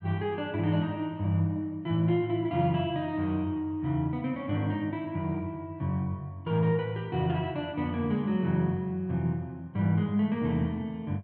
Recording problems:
none

